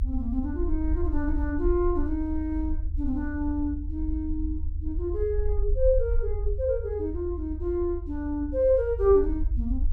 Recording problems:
rumble; below 74 Hz, SNR 4 dB

